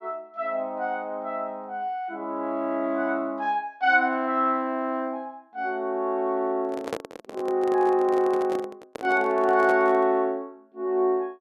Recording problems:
microphone handling noise; from 6.5 to 10 s; peak 0 dB vs average level

